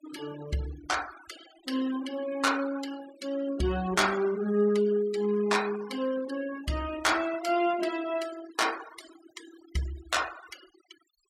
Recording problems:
noise reduction artefacts; signal-to-artefact ratio 16 dB

